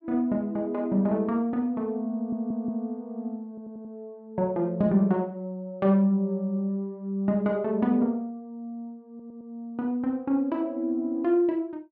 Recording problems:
audio stuttering; at 2 s, at 3.5 s and at 9 s

